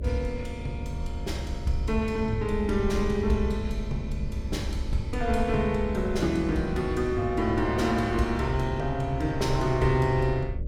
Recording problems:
electrical hum; 50 Hz, harmonics up to 600 Hz, SNR 14 dB
rumble; below 72 Hz, SNR 7 dB

